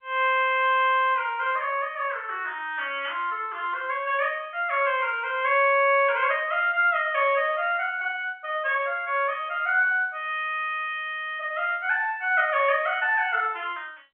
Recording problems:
telephone audio; 300 Hz to 3.3 kHz, G.711

